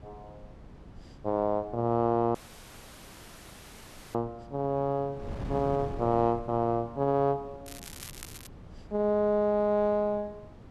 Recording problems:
wind on the microphone; below 300 Hz, SNR 17 dB
audio cutting out; at 2.5 s for 2 s
crackle; at 7.5 s; loose cable, SNR 16 dB

